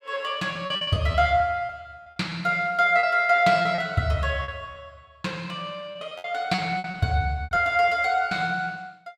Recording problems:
packet loss; 10% of the sound replaced, filled with repeated pitch periods

